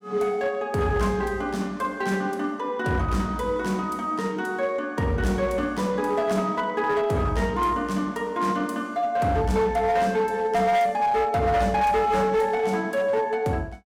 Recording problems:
distortion; hard clipping, uneven, signal-to-distortion ratio 12 dB

